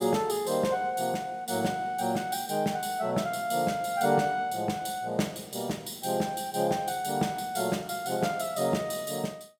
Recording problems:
none

